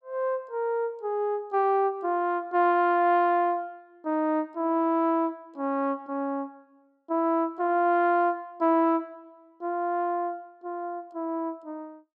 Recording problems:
none

